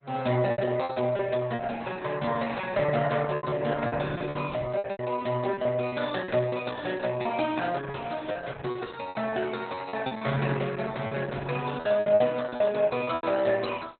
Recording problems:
codec artefacts; Opus, log-spectral distance 5 dB, nothing above 4 kHz
lost packets; 12% of the sound replaced, filled with repeated pitch periods

